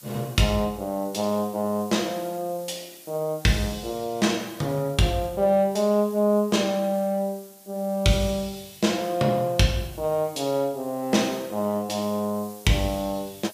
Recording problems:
background hiss; slope +2 dB per octave, SNR 21 dB

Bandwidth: 15 kHz